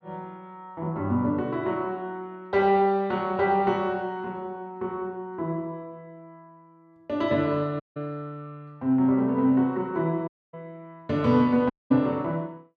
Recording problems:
audio cutting out; at 8 s, at 10 s and at 12 s

